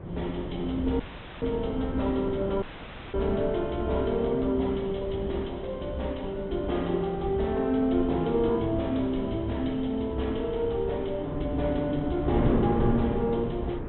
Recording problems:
treble missing; nothing above 3.7 kHz
lossy codec; G.722, log-spectral distance 2 dB
wind noise; below 380 Hz, SNR 7 dB
dropout; at 1 s and at 2.5 s for 0.5 s

